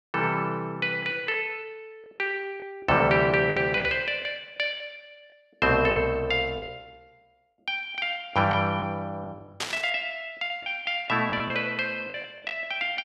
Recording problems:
lost packets; 6% of the sound replaced, filled with the last packet
burst of static; at 9.5 s; peak +1 dB vs average level

